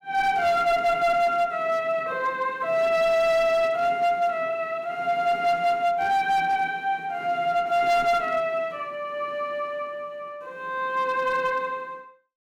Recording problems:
distortion; hard clipping, signal-to-distortion ratio 11 dB

